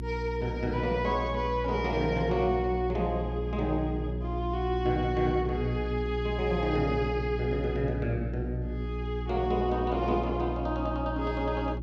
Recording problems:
hum; 60 Hz, harmonics up to 360 Hz, SNR 5 dB

